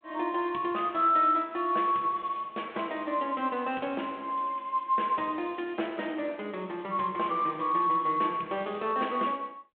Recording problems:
phone line; 300 Hz to 3.4 kHz, G.726

